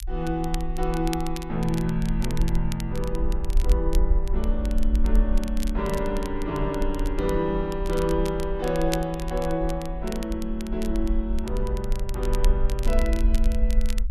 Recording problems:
low-frequency rumble; below 48 Hz, SNR 1 dB
crackling; vinyl, SNR 14 dB

